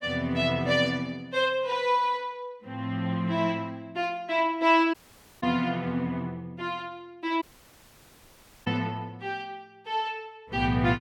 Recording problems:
dropout; at 5 s and at 7.5 s for 1 s

